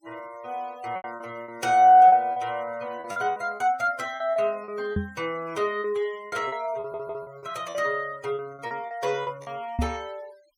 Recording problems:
noise reduction artefacts; signal-to-artefact ratio 26 dB
lost packets; 11% of the sound replaced, filled with repeated pitch periods
knock on the microphone; at 5 s and at 10 s; peak +2 dB vs average level
audio stuttering; at 7 s

